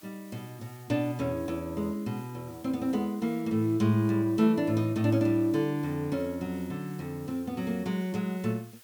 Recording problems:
background hiss; slope +1 dB per octave, SNR 24 dB

